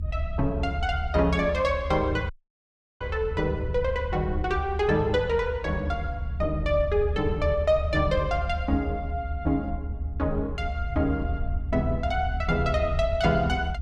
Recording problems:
low-frequency rumble; below 76 Hz, SNR 5 dB
dropout; at 2.5 s for 0.5 s

